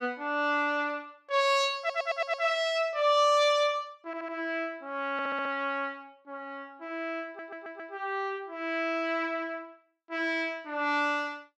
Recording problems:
stutter; 4 times, first at 2 s

